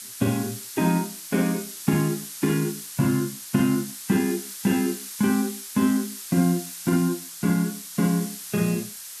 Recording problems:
hiss; slope +5 dB per octave, SNR 10 dB

